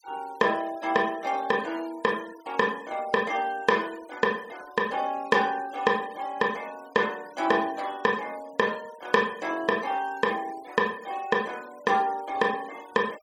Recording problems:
noise reduction artefacts; signal-to-artefact ratio 22 dB

